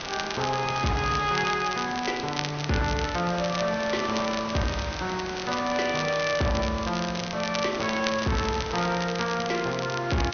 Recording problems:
treble missing; nothing above 6.4 kHz
distortion; hard clipping, uneven, signal-to-distortion ratio 11 dB
background hiss; slope -3 dB per octave, SNR 9 dB
crackle; vinyl, SNR 9 dB

